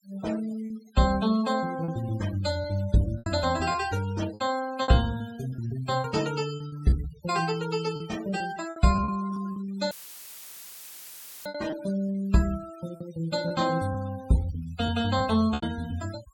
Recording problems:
noise reduction artefacts; signal-to-artefact ratio 16 dB
lost packets; 8% of the sound replaced, filled with repeated pitch periods
dropout; at 10 s for 1.5 s; filled with static

